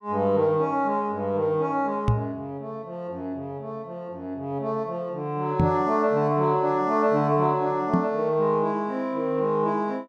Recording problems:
microphone bump; at 2 s, at 5.5 s and at 8 s; peak +6 dB vs average level

